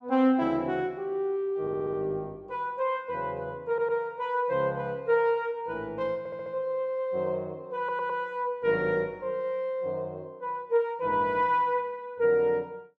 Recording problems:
stutter; 4 times, first at 1.5 s

